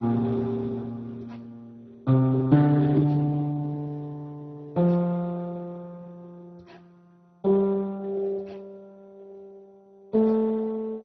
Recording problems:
codec artefacts; Speex, then MP2, log-spectral distance 2 dB

